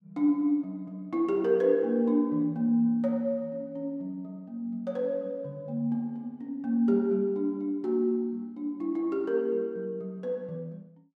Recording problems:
none

